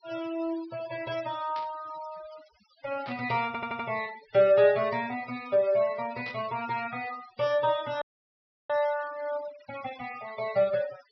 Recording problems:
treble missing; nothing above 5.5 kHz
denoising artefacts; signal-to-artefact ratio 18 dB
burst of static; at 1.5 s, at 3 s and at 6.5 s; peak -11 dB vs average level
stutter; at 3.5 s
frozen audio; at 8 s for 0.5 s

